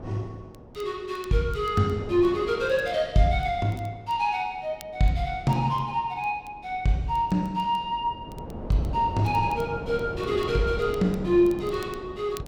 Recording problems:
wind on the microphone; below 500 Hz, SNR 13 dB
crackle; vinyl, SNR 29 dB

